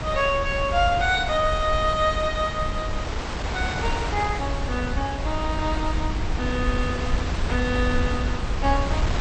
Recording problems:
lossy compression; MP2, log-spectral distance 2 dB, nothing above 7.8 kHz
low-frequency rumble; below 80 Hz, SNR 5 dB
wind noise; below 2.2 kHz, SNR 6 dB

